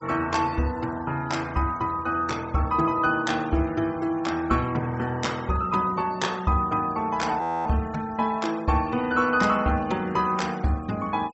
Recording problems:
treble missing; nothing above 7.7 kHz
denoising artefacts; signal-to-artefact ratio 21 dB
audio freezing; at 7.5 s

